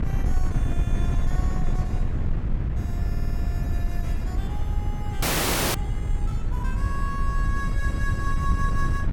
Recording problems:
wind on the microphone; below 90 Hz, SNR -10 dB
stutter; at 3 s
audio freezing; at 5 s for 0.5 s

